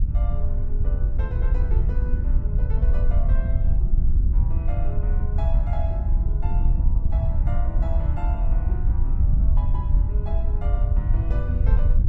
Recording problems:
wind noise; below 68 Hz, SNR -15 dB

